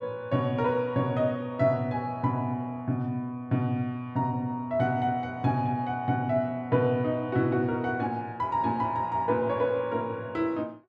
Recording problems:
none

